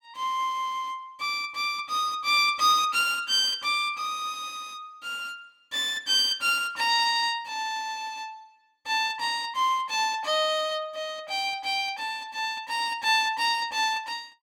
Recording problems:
none

